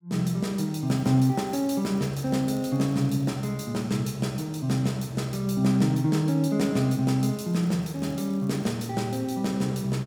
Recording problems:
crackle; from 1 to 3.5 s and from 7.5 to 8.5 s; loose cable, SNR 30 dB

